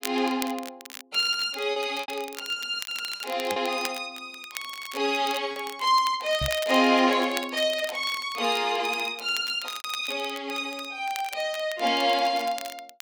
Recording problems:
crackle; vinyl, SNR 14 dB
lost packets; 4% of the sound replaced, filled with repeated pitch periods
knock on the microphone; at 6.5 s; peak -2 dB vs average level

